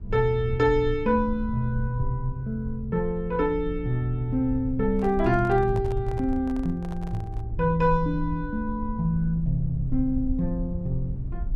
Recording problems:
low-frequency rumble; below 74 Hz, SNR 9 dB
handling noise; from 5 to 7.5 s; peak -11 dB vs average level

